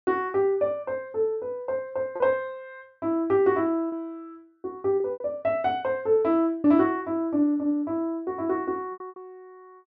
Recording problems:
lost packets; 4% of the sound replaced, filled with repeated pitch periods

